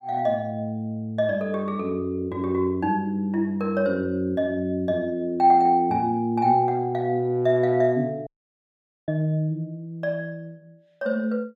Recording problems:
audio cutting out; at 8.5 s for 1 s

